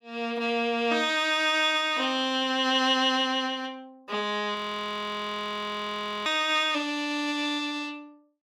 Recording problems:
audio freezing; at 4.5 s for 1.5 s

